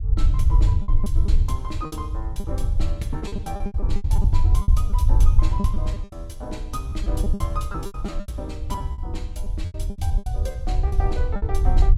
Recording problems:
low-frequency rumble; below 74 Hz, SNR -10 dB
packet loss; 14% of the sound replaced, filled with repeated pitch periods

